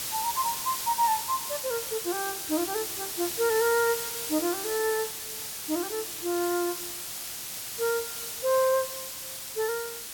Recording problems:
background hiss; slope +1 dB per octave, SNR 3 dB
crackle; vinyl, SNR 27 dB

